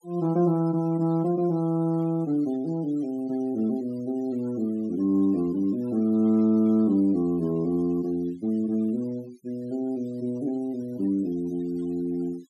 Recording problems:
noise reduction artefacts; signal-to-artefact ratio 26 dB

